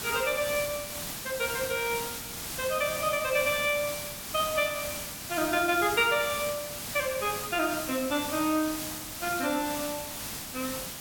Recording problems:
background hiss; slope -1 dB per octave, SNR 6 dB

